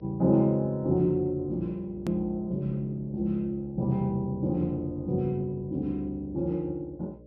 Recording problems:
treble missing; nothing above 5.7 kHz
hum; 60 Hz, harmonics up to 600 Hz, SNR 23 dB
click at an edit; at 2 s

